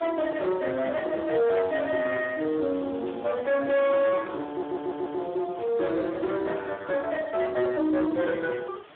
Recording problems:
phone line; 240 Hz to 3.7 kHz, Speex
distorted audio; soft clipping, signal-to-distortion ratio 10 dB
hiss; SNR 23 dB
static burst; at 1.5 s, at 3 s and at 5.5 s; peak -17 dB vs average level
stutter; at 4.5 s

